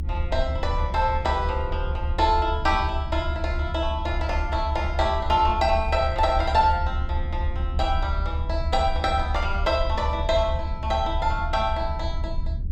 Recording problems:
rumble; below 76 Hz, SNR 3 dB

